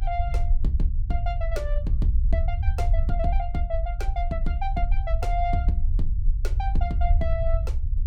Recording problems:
rumble; below 60 Hz, SNR -5 dB

